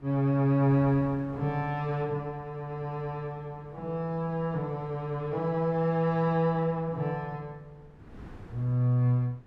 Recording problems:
wind noise; below 330 Hz, SNR 23 dB

